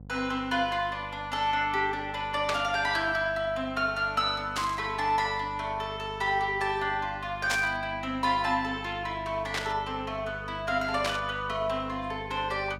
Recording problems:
hum; 50 Hz, harmonics up to 750 Hz, SNR 16 dB
static burst; 5 times, first at 2.5 s; peak +3 dB vs average level

